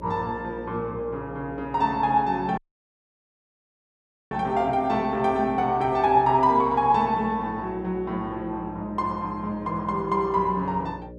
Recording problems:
electrical hum; 60 Hz, harmonics up to 600 Hz, SNR 18 dB
audio cutting out; at 2.5 s for 1.5 s

